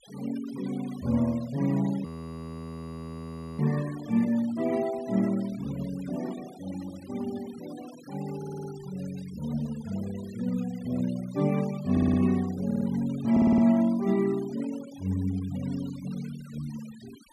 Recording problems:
noise reduction artefacts; signal-to-artefact ratio 19 dB
frozen audio; at 2 s for 1.5 s
audio stuttering; 4 times, first at 8.5 s

